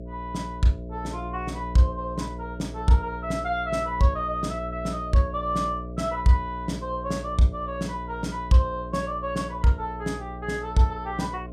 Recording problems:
hum; 60 Hz, harmonics up to 660 Hz, SNR 10 dB

